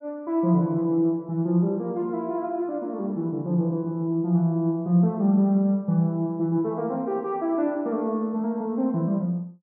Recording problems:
none

